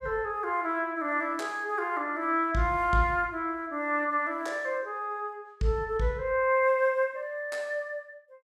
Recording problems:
none

